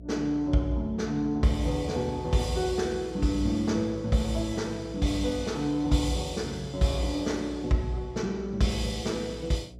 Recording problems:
hum; 60 Hz, harmonics up to 660 Hz, SNR 16 dB

